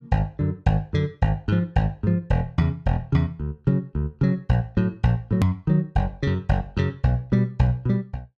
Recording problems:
click at an edit; at 5.5 s

